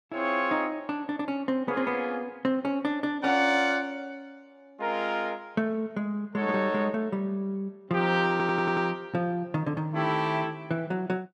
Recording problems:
stutter; at 8.5 s

